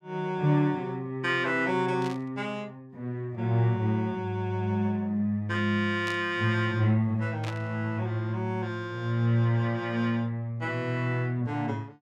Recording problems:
static burst; at 2 s, at 6 s and at 7.5 s; peak -7 dB vs average level

